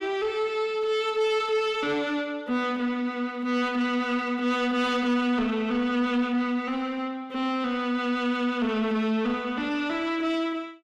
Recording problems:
distorted audio; soft clipping, signal-to-distortion ratio 11 dB

